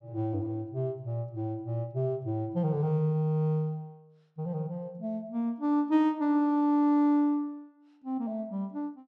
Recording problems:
none

